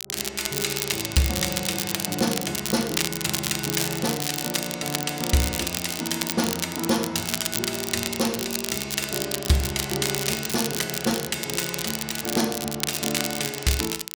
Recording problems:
crackle; vinyl, SNR 1 dB

